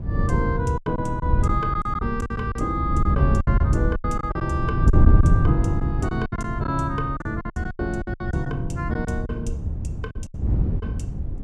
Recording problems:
wind noise; below 120 Hz, SNR -2 dB
lost packets; 12% of the sound replaced, filled with silence

